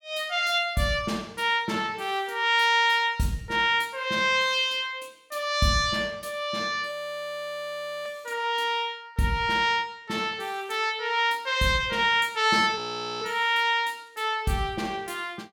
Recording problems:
audio freezing; at 7 s for 1 s and at 13 s

